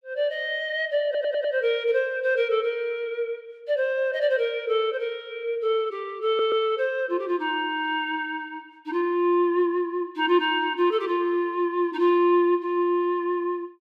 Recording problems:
stutter; at 1 s and at 6.5 s

